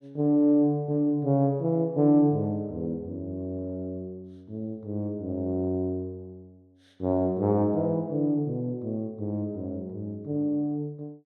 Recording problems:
none

